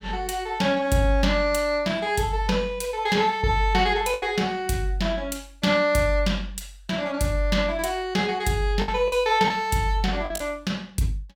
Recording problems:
lost packets; 3% of the sound replaced, filled with the last packet

